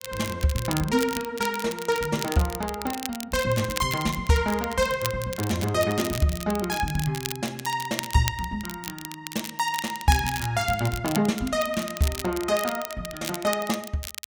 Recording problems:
crackling; vinyl, SNR 9 dB

